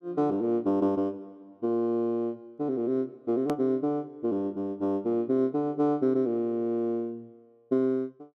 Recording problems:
edit click; at 3.5 s

